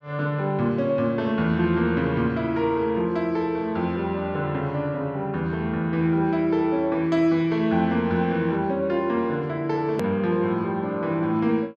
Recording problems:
click at an edit; at 10 s

